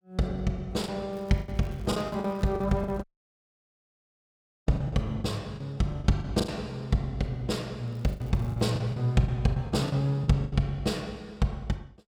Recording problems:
lost packets; 12% of the sound replaced, filled with the last packet
crackle; from 1 to 3 s and at 8 s; loose cable, SNR 29 dB
audio cutting out; at 3 s for 1.5 s

